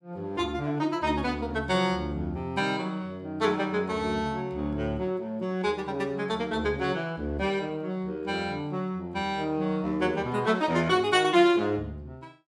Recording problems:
none

